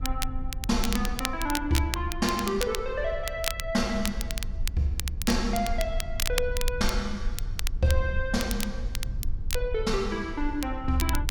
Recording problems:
rumble; below 54 Hz, SNR 6 dB
crackling; vinyl, SNR 6 dB

